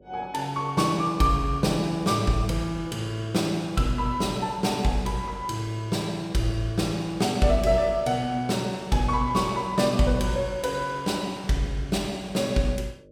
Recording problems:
hum; 50 Hz, harmonics up to 600 Hz, SNR 27 dB

